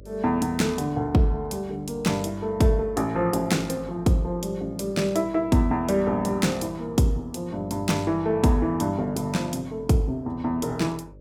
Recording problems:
electrical hum; 50 Hz, harmonics up to 600 Hz, SNR 23 dB

